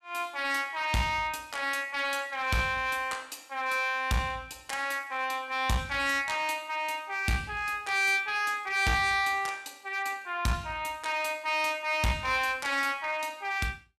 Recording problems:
distortion; hard clipping, uneven, signal-to-distortion ratio 10 dB

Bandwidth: 14.5 kHz